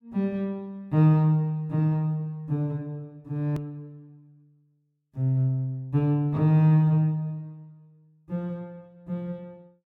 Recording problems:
click at an edit; at 3.5 s

